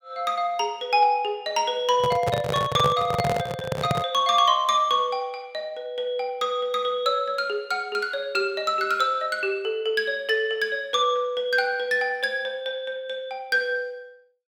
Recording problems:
microphone handling noise; from 2 to 4 s; peak +3 dB vs average level

